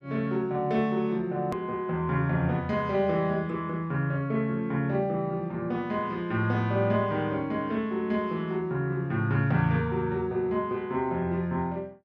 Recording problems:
click at an edit; at 1.5 s

